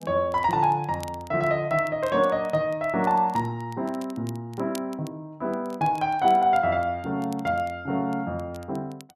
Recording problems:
crackling; vinyl, SNR 25 dB

